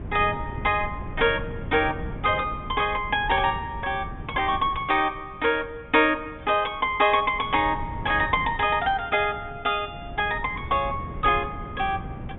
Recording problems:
low-pass filter; nothing above 3.7 kHz
wind on the microphone; below 190 Hz, SNR 13 dB

